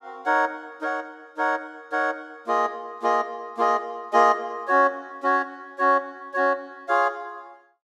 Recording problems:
none

